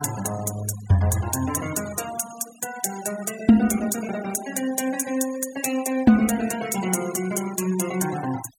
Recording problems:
denoising artefacts; signal-to-artefact ratio 15 dB

